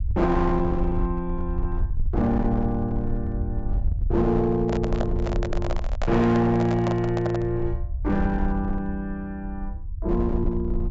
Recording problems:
treble cut off; nothing above 8 kHz
distortion; hard clipping, signal-to-distortion ratio 11 dB
low-frequency rumble; below 72 Hz, SNR 5 dB
handling noise; from 4.5 to 7.5 s; peak -1 dB vs average level

